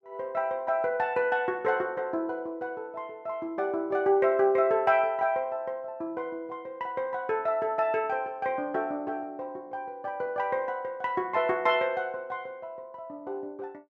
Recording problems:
none

